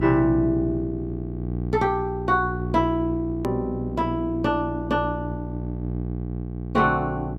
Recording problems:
hum; 60 Hz, harmonics up to 780 Hz, SNR 6 dB
click at an edit; at 3.5 s

